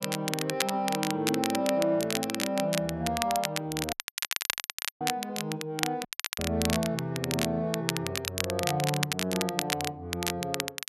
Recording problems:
crackling; vinyl, SNR 2 dB
dropout; at 4 s for 1 s and at 6 s

